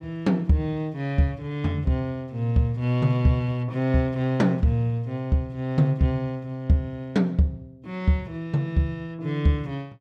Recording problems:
none

